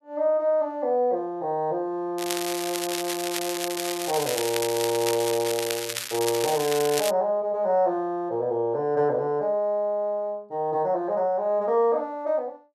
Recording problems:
crackling; from 2 to 7 s; loose cable, SNR 5 dB

